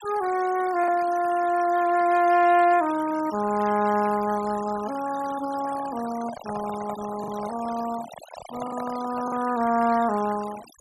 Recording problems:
denoising artefacts; signal-to-artefact ratio 17 dB
packet loss; 1.6% of the sound replaced, filled with the last packet
handling noise; from 5.5 to 9.5 s; peak -7 dB vs average level

